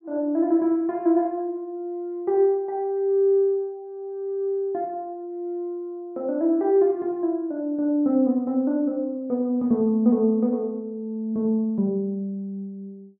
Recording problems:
none

